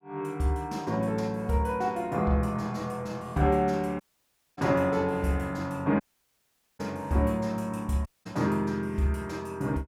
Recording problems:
audio cutting out; at 4 s for 0.5 s, at 6 s for 1 s and at 8 s

